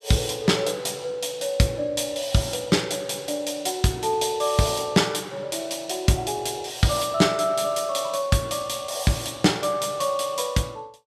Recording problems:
none

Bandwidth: 14.5 kHz